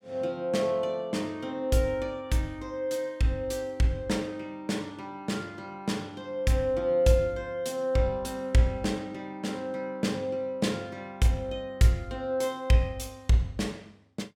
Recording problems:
none

